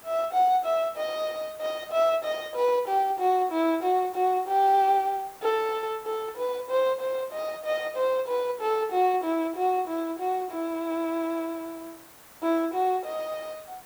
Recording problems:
hiss; SNR 22 dB

